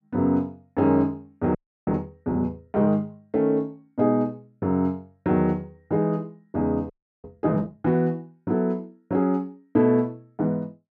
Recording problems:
audio freezing; at 1.5 s and at 7 s

